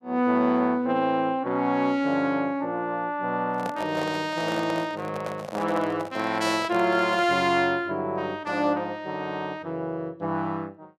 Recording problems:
microphone handling noise; from 3.5 to 7.5 s; peak -3 dB vs average level

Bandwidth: 14.5 kHz